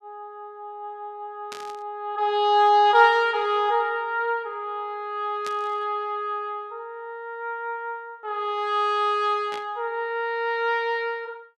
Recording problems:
static burst; at 1.5 s, at 5.5 s and at 9.5 s; peak -8 dB vs average level

